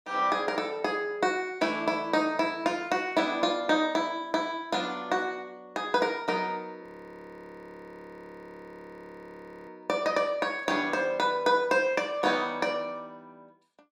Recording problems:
frozen audio; at 7 s for 3 s

